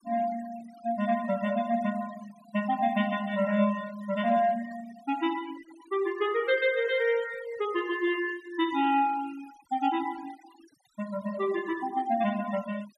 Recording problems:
denoising artefacts; signal-to-artefact ratio 18 dB

